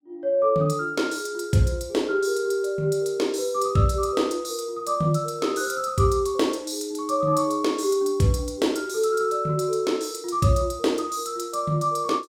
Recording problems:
none

